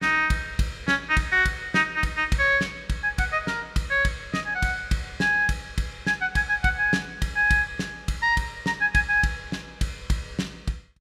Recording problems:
none

